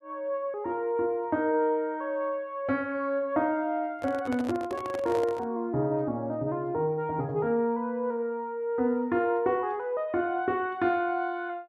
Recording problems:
microphone handling noise; from 4 to 5.5 s; peak -5 dB vs average level

